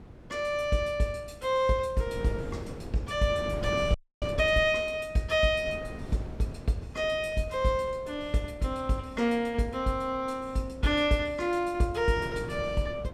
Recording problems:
wind noise; below 350 Hz, SNR 14 dB
frozen audio; at 4 s

